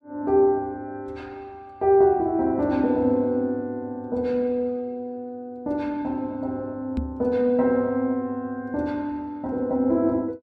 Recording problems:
knock on the microphone; at 7 s; peak 0 dB vs average level

